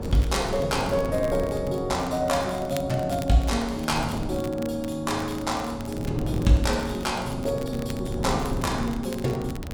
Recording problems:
wind noise; below 300 Hz, SNR 8 dB
crackle; vinyl, SNR 19 dB

